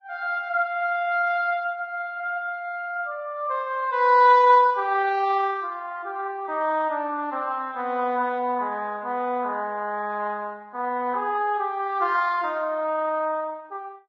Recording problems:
codec artefacts; Vorbis, log-spectral distance 2 dB

